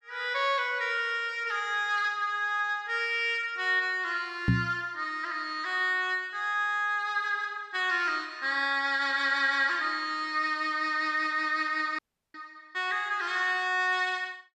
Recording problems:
knock on the microphone; at 4.5 s; peak +6 dB vs average level
dropout; at 12 s

